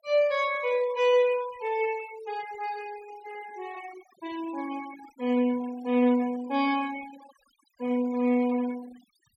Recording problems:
denoising artefacts; signal-to-artefact ratio 21 dB

